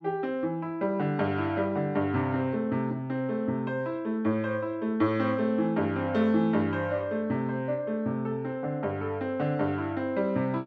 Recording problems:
none

